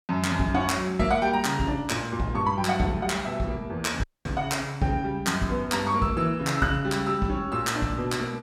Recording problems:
audio cutting out; at 4 s

